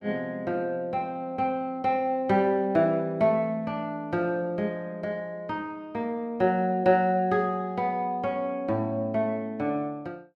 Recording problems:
none

